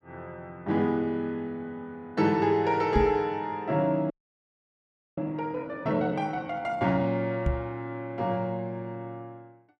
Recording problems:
microphone bump; at 3 s and at 7.5 s; peak +5 dB vs average level
frozen audio; at 4 s for 1 s

